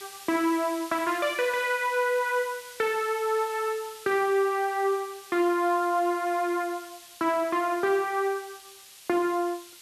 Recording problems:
hiss; slope +3 dB per octave, SNR 18 dB

